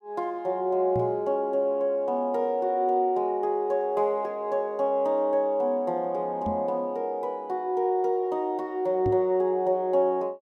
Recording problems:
microphone thump; at 1 s, at 6.5 s and at 9 s; peak -2 dB vs average level

